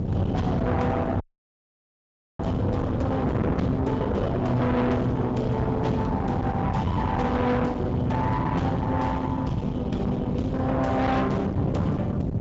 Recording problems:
treble missing; nothing above 7.6 kHz
lossy compression; Opus, log-spectral distance 2 dB
distorted audio; soft clipping, signal-to-distortion ratio 6 dB
wind on the microphone; below 340 Hz, SNR 2 dB
frozen audio; at 1 s for 1 s

